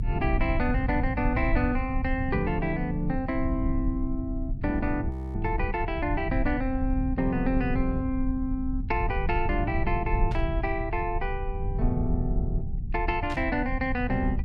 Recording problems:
rumble; below 88 Hz, SNR 3 dB
audio freezing; at 5 s
burst of static; at 10 s and at 13 s; peak -9 dB vs average level

